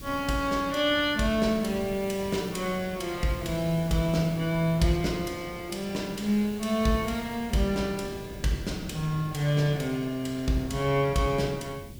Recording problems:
background hiss; SNR 21 dB
wind noise; below 240 Hz, SNR 17 dB

